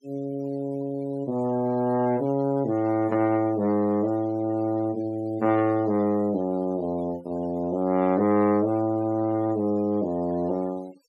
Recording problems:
denoising artefacts; signal-to-artefact ratio 26 dB

